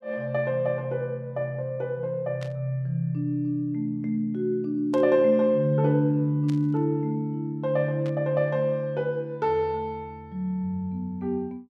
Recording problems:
static burst; 4 times, first at 2.5 s; peak -13 dB vs average level

